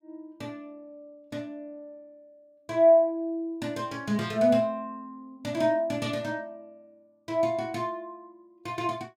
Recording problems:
none

